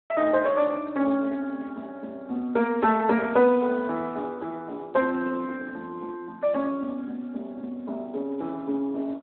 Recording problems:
telephone audio; 220 Hz to 3 kHz, Speex

